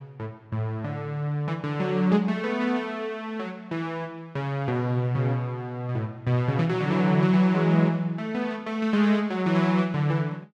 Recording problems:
none

